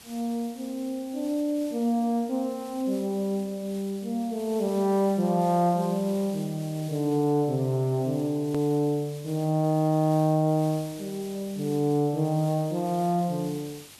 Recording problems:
background hiss; slope 0 dB per octave, SNR 20 dB
click at an edit; at 8.5 s

